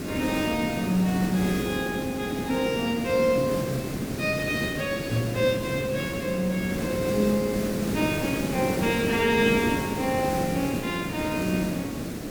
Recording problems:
hiss; SNR 4 dB

